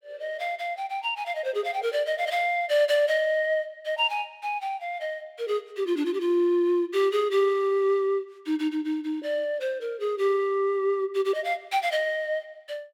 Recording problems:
none

